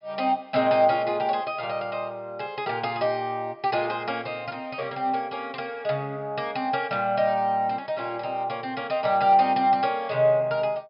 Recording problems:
treble missing; nothing above 5.5 kHz

